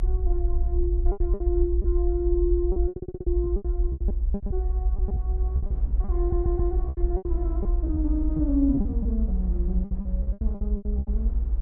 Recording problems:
rumble; below 58 Hz, SNR -3 dB
wind noise; below 270 Hz, SNR 16 dB
lost packets; 14% of the sound replaced, filled with repeated pitch periods
audio stuttering; at 3 s and at 6 s

